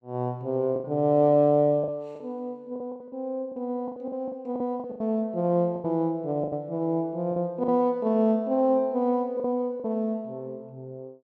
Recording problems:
packet loss; 9% of the sound replaced, filled with the last packet

